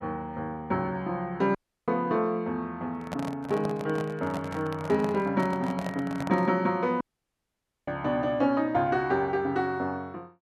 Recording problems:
dropout; at 1.5 s and at 7 s for 1 s
handling noise; from 3 to 6.5 s; peak -3 dB vs average level

